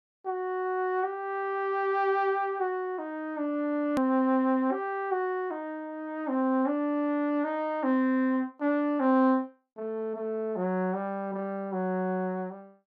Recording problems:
edit click; at 4 s

